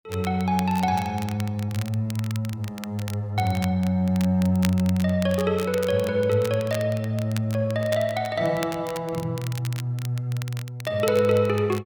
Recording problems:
crackle; vinyl, SNR 16 dB

